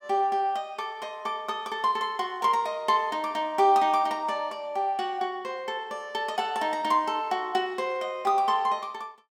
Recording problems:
none

